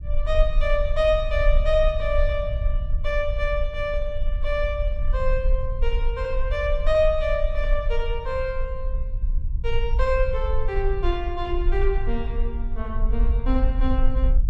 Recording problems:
rumble; below 50 Hz, SNR 1 dB

